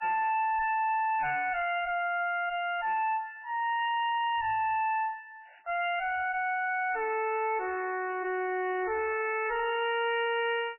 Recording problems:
codec artefacts; MP3, log-spectral distance 4 dB, nothing above 2.7 kHz
distorted audio; soft clipping, signal-to-distortion ratio 4 dB

